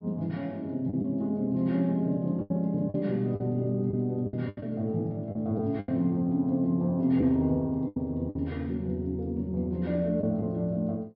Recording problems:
treble cut off; nothing above 5.5 kHz
lost packets; 6% of the sound replaced, filled with the last packet

